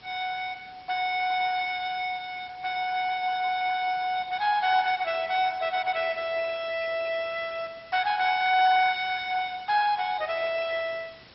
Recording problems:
lossy compression; MP2, log-spectral distance 6 dB, nothing above 5.3 kHz
hiss; slope -1 dB per octave, SNR 25 dB

